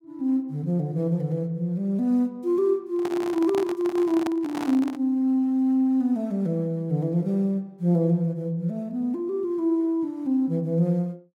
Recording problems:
microphone handling noise; from 3 to 5 s; peak -3 dB vs average level

